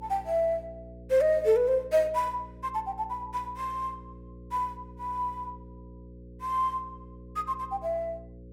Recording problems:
mains hum; 60 Hz, harmonics up to 540 Hz, SNR 18 dB

